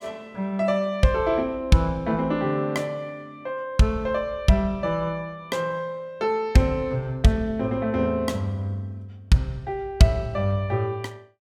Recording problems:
none

